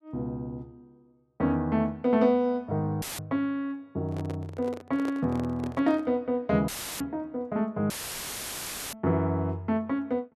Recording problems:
audio cutting out; at 3 s, at 6.5 s and at 8 s for 1 s; filled with static
handling noise; from 4 to 6 s; peak -5 dB vs average level

